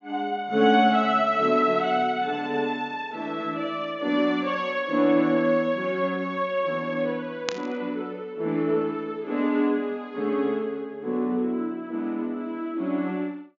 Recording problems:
treble missing; nothing above 7.3 kHz
static burst; at 7.5 s; peak +2 dB vs average level

